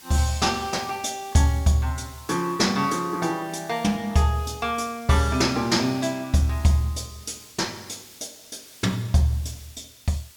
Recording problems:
background hiss; slope +2 dB per octave, SNR 22 dB

